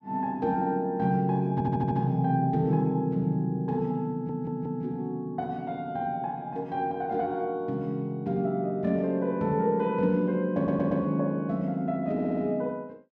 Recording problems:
stutter; 4 times, first at 1.5 s

